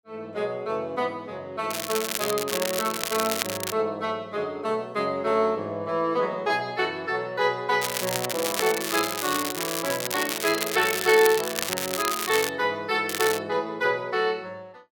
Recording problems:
crackle; from 1.5 to 3.5 s, from 8 to 12 s and at 13 s; loose cable, SNR 3 dB

